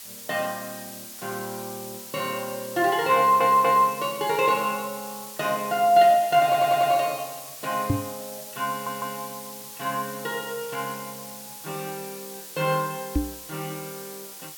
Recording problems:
hiss; slope +2 dB per octave, SNR 14 dB
stutter; at 3 s, at 6.5 s and at 8.5 s
knock on the microphone; at 8 s and at 13 s; peak +4 dB vs average level

